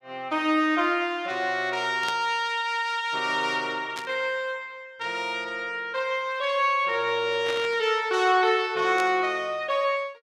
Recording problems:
static burst; 4 times, first at 2 s; peak -5 dB vs average level

